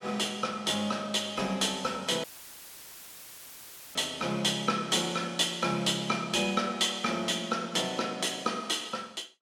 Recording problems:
audio cutting out; at 2 s for 1.5 s; filled with static

